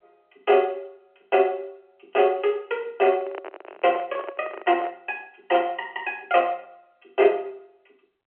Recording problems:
phone line; 300 Hz to 3.1 kHz, G.711
handling noise; from 3 to 5 s; peak -5 dB vs average level

